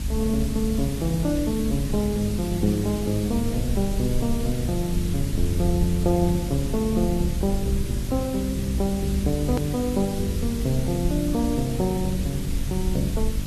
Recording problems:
lossy codec; AAC, log-spectral distance 5 dB, nothing above 13.1 kHz
electrical hum; 50 Hz, harmonics up to 600 Hz, SNR 9 dB
hiss; slope +1 dB per octave, SNR 12 dB
rumble; below 64 Hz, SNR 7 dB
hard cut with a click; at 9.5 s

